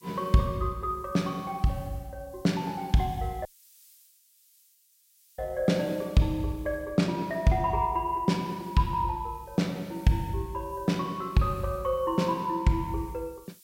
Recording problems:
hiss; slope +10 dB per octave, SNR 27 dB
audio cutting out; at 3.5 s for 2 s

